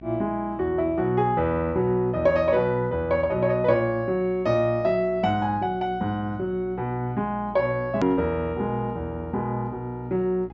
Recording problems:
treble cut off; nothing above 8 kHz
mains hum; 60 Hz, harmonics up to 780 Hz, SNR 18 dB
hard cut with a click; at 8 s

